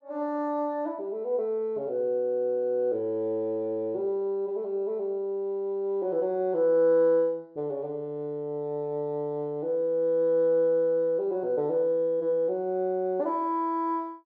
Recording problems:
none

